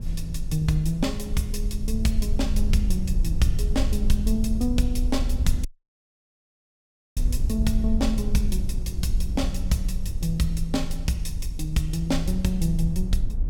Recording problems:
rumble; below 62 Hz, SNR 1 dB
dropout; at 5.5 s for 1.5 s

